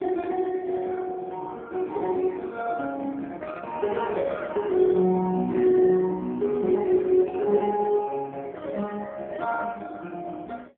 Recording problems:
telephone audio; 150 Hz to 3.3 kHz, AMR-NB

